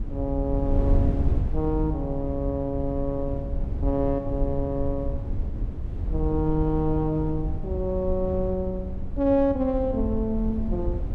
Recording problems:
wind on the microphone; below 88 Hz, SNR 3 dB

